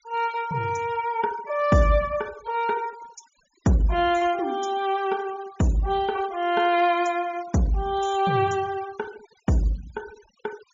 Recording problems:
low-pass filter; nothing above 7 kHz
noise reduction artefacts; signal-to-artefact ratio 22 dB

